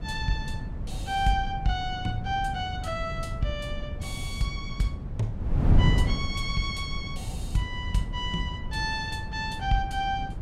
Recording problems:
wind on the microphone; below 130 Hz, SNR 1 dB

